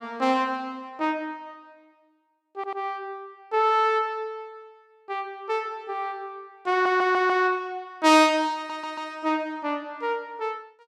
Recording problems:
stutter; at 2.5 s, at 6.5 s and at 8.5 s

